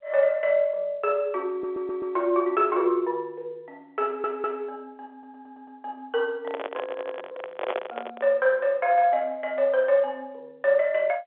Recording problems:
telephone audio; 370 Hz to 3.6 kHz, G.711
stutter; 4 times, first at 1.5 s
microphone handling noise; from 6.5 to 8.5 s; peak -1 dB vs average level

